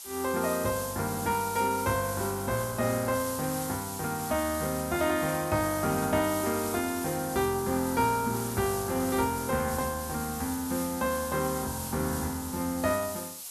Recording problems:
background hiss; SNR 8 dB

